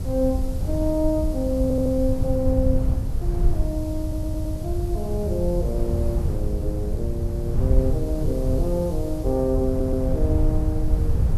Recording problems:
background hiss; slope +5 dB per octave, SNR 21 dB
wind noise; below 94 Hz, SNR -1 dB
audio stuttering; at 1.5 s, at 4 s and at 9.5 s

